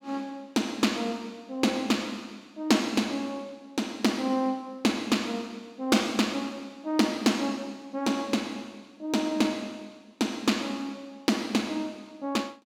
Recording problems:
none

